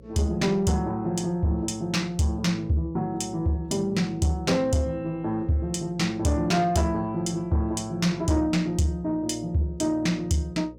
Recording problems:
distorted audio; soft clipping, signal-to-distortion ratio 12 dB
hum; 60 Hz, harmonics up to 540 Hz, SNR 23 dB

